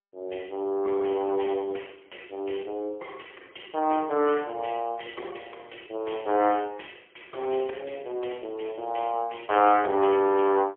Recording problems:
telephone audio; 300 Hz to 3.2 kHz, AMR-NB, then MP3

